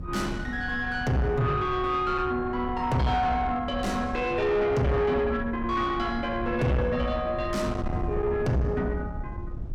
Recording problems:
distortion; soft clipping, signal-to-distortion ratio 7 dB
wind noise; below 180 Hz, SNR 10 dB

